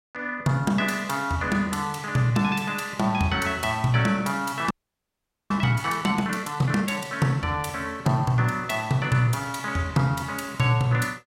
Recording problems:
frozen audio; at 4.5 s for 1 s

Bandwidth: 16 kHz